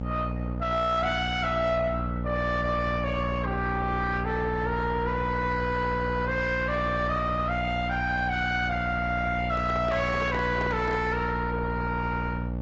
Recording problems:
treble missing; nothing above 7.3 kHz
codec artefacts; Opus, log-spectral distance 2 dB
distortion; soft clipping, signal-to-distortion ratio 11 dB
electrical hum; 60 Hz, harmonics up to 900 Hz, SNR 4 dB
handling noise; from 9.5 to 11 s; peak -1 dB vs average level

